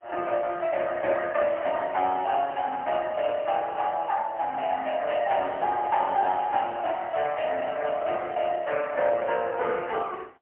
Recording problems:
telephone audio; 370 Hz to 3.1 kHz, AMR-NB, then MP3

